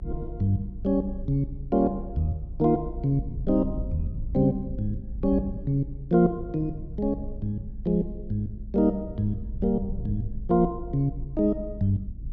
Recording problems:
rumble; below 74 Hz, SNR 10 dB

